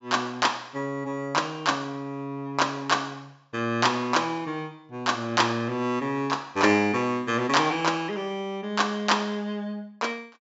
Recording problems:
low-pass filter; nothing above 8 kHz

